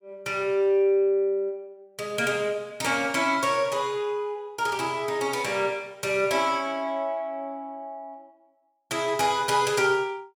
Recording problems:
none

